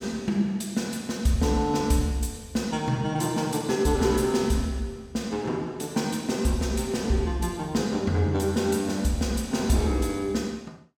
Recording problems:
none

